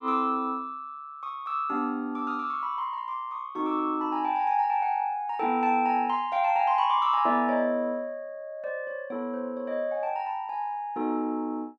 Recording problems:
none

